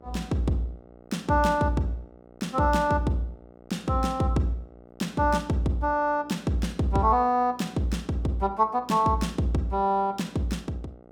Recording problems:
electrical hum; 60 Hz, harmonics up to 1.5 kHz, SNR 25 dB

